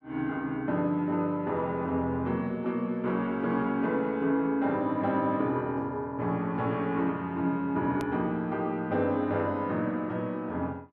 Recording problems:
click at an edit; at 8 s

